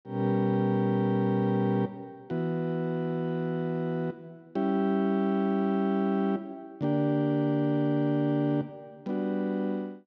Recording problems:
none

